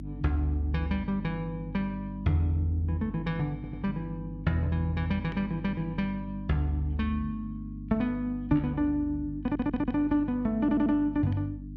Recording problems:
hum; 50 Hz, harmonics up to 300 Hz, SNR 11 dB
audio stuttering; at 3.5 s, at 9.5 s and at 11 s

